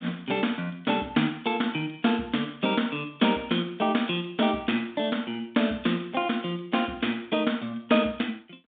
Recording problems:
phone line; 130 Hz to 3.7 kHz, G.726

